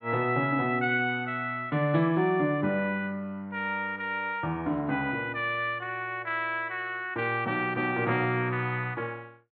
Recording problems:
low-pass filter; nothing above 4.4 kHz

